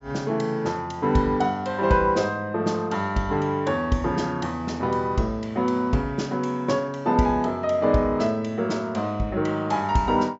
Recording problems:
treble cut off; nothing above 8 kHz

